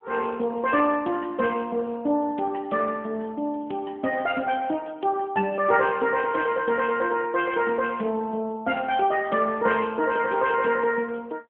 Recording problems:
phone line; 170 Hz to 3.4 kHz, AMR-NB

